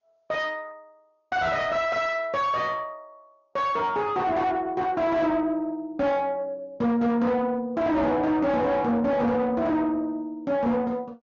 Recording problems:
treble cut off; nothing above 6.7 kHz
lossy compression; Opus, log-spectral distance 2 dB
distorted audio; soft clipping, signal-to-distortion ratio 7 dB

